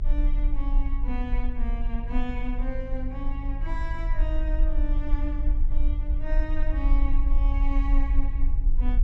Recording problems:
hum; 50 Hz, harmonics up to 500 Hz, SNR 4 dB
low-frequency rumble; below 44 Hz, SNR -8 dB

